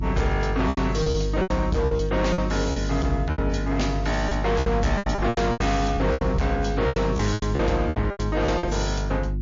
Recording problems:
codec artefacts; MP3, log-spectral distance 3 dB, nothing above 6.7 kHz
distortion; hard clipping, uneven, signal-to-distortion ratio 7 dB
electrical hum; 50 Hz, harmonics up to 350 Hz, SNR 3 dB
lost packets; 14% of the sound replaced, filled with repeated pitch periods

